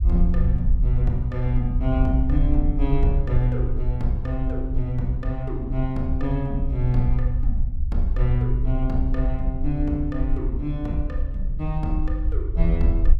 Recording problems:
rumble; below 58 Hz, SNR 0 dB

